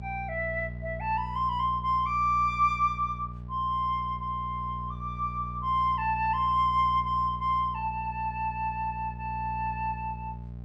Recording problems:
hum; 60 Hz, harmonics up to 600 Hz, SNR 11 dB

